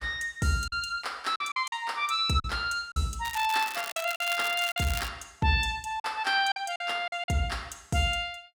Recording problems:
packet loss; 7% of the sound replaced, filled with silence
crackle; from 3 to 5 s; loose cable, SNR 10 dB

